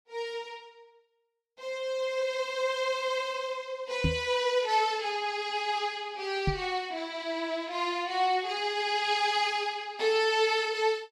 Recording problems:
microphone thump; at 4 s and at 6.5 s; peak +4 dB vs average level

